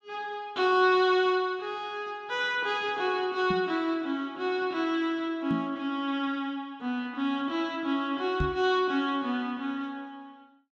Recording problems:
microphone thump; at 3.5 s, at 5.5 s and at 8.5 s; peak +2 dB vs average level

